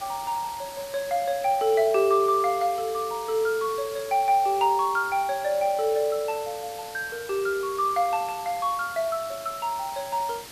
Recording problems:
hiss; slope -1 dB per octave, SNR 15 dB

